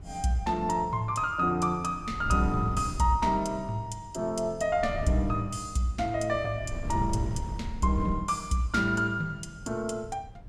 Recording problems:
wind noise; below 130 Hz, SNR 11 dB

